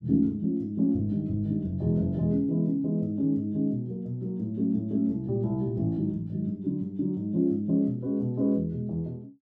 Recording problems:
none

